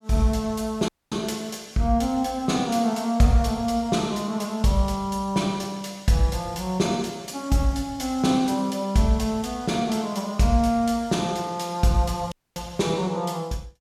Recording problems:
audio cutting out; at 1 s and at 12 s

